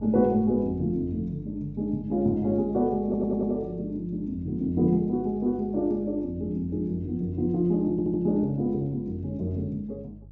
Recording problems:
treble missing; nothing above 8 kHz
hum; 50 Hz, harmonics up to 350 Hz, SNR 19 dB
audio stuttering; at 3 s and at 8 s

